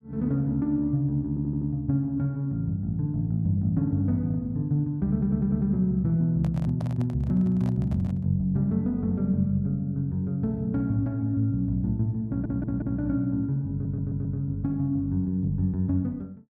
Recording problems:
stutter; 4 times, first at 1.5 s
handling noise; from 6.5 to 8.5 s; peak -10 dB vs average level

